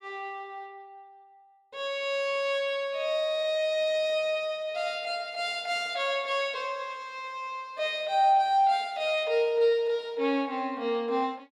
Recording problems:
none

